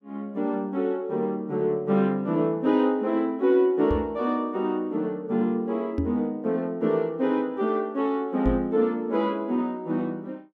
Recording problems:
knock on the microphone; at 4 s, at 6 s and at 8.5 s; peak +2 dB vs average level

